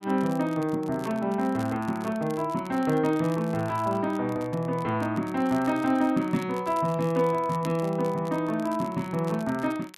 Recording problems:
crackling; vinyl, SNR 23 dB

